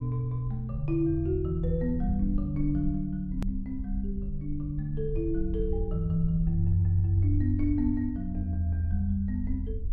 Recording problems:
low-frequency rumble; below 66 Hz, SNR 7 dB
edit click; at 3.5 s

